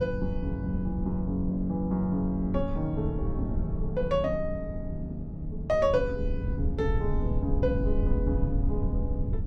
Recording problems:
rumble; below 100 Hz, SNR 2 dB

